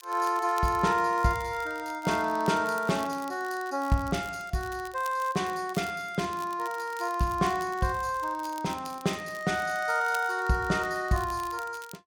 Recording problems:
crackling; vinyl, SNR 20 dB

